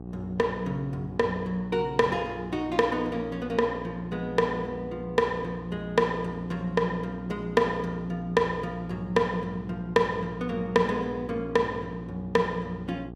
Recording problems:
electrical hum; 60 Hz, harmonics up to 1.1 kHz, SNR 13 dB

